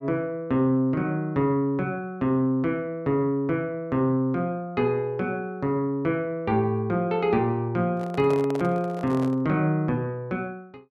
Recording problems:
microphone handling noise; from 8 to 9.5 s; peak -7 dB vs average level

